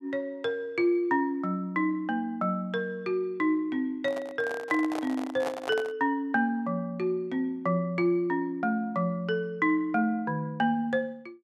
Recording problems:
microphone handling noise; from 4 to 6 s; peak -2 dB vs average level

